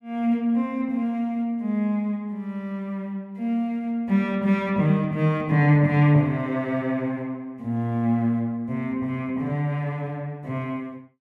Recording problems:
none

